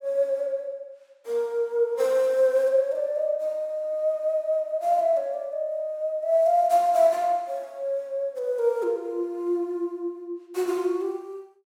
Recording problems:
none

